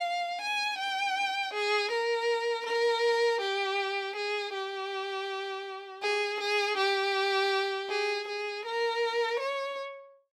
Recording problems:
none

